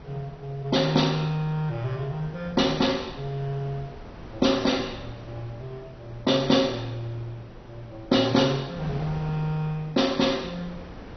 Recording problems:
lossy codec; MP2, log-spectral distance 3 dB, nothing above 6 kHz
wind on the microphone; below 650 Hz, SNR 18 dB

